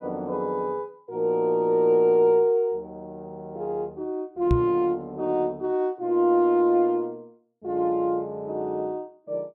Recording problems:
knock on the microphone; at 4.5 s; peak +4 dB vs average level

